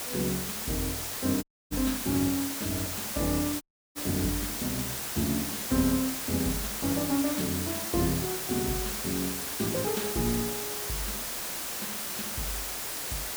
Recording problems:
background hiss; slope -1 dB per octave, SNR 0 dB
dropout; at 1.5 s and at 3.5 s

